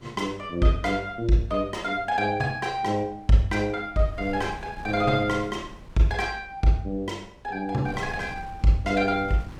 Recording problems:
wind on the microphone; below 280 Hz, SNR 20 dB

